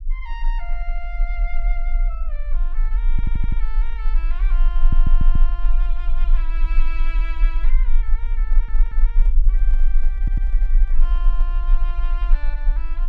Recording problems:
rumble; below 34 Hz, strongest tone 20 Hz, SNR -16 dB
stutter; 4 times, first at 3 s
microphone handling noise; from 8.5 to 12 s; peak -6 dB vs average level

